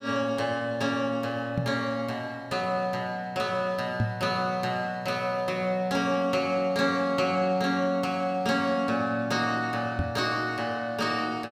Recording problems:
microphone bump; at 1.5 s, at 4 s and at 10 s; peak +4 dB vs average level

